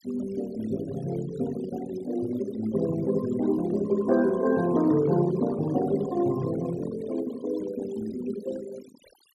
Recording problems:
noise reduction artefacts; signal-to-artefact ratio 17 dB

